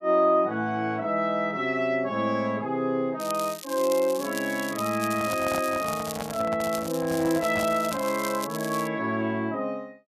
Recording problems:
crackling; from 3 to 6.5 s and from 6.5 to 9 s; loose cable, SNR 12 dB
handling noise; from 5 to 8 s; peak -4 dB vs average level

